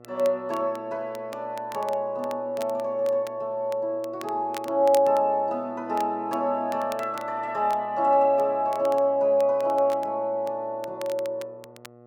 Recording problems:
mains hum; 60 Hz, harmonics up to 1.4 kHz, SNR 25 dB
crackling; vinyl, SNR 22 dB

